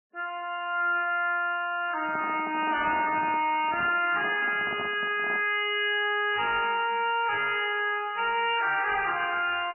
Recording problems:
lossy compression; MP3, log-spectral distance 5 dB, nothing above 2.9 kHz
distortion; hard clipping, signal-to-distortion ratio 10 dB
handling noise; from 2 to 5.5 s; peak -7 dB vs average level

